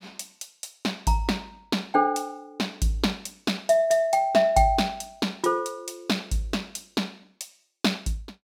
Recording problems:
none

